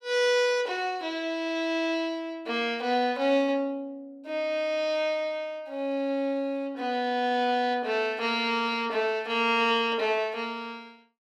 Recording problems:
none

